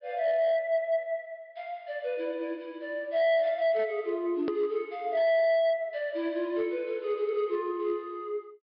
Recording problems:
treble missing; nothing above 5.3 kHz
distortion; hard clipping, signal-to-distortion ratio 11 dB
hard cut with a click; at 4.5 s

